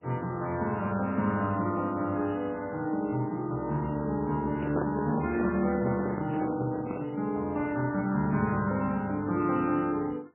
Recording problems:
lossy compression; MP3, log-spectral distance 2 dB, nothing above 2.4 kHz
handling noise; from 4.5 to 7 s; peak +2 dB vs average level

